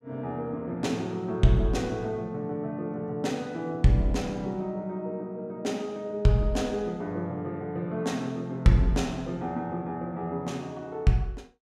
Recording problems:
none

